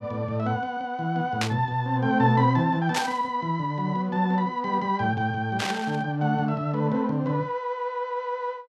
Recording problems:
static burst; at 1.5 s, at 3 s and at 5.5 s; peak +2 dB vs average level

